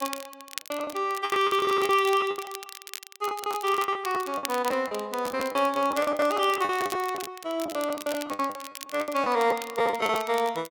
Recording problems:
crackle; vinyl, SNR 14 dB
packet loss; 18% of the sound replaced, filled with the last packet

